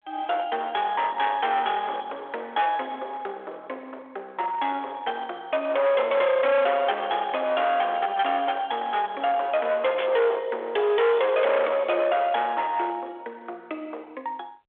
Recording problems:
phone line; 560 Hz to 3.4 kHz, G.726
distortion; hard clipping, uneven, signal-to-distortion ratio 8 dB
burst of static; at 10 s; peak -3 dB vs average level

